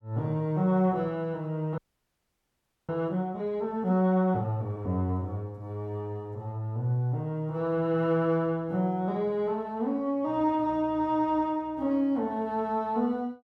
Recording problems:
audio freezing; at 2 s for 1 s

